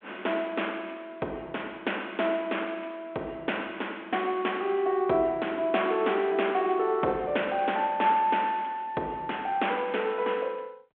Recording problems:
phone line; 240 Hz to 3.4 kHz, G.726

